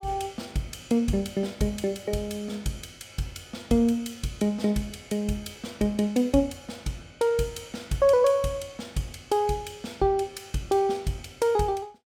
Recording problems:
none

